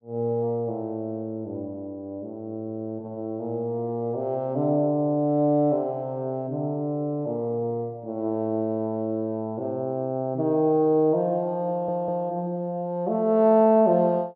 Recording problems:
audio stuttering; at 12 s

